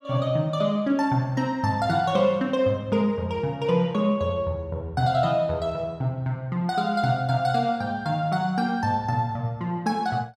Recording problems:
none

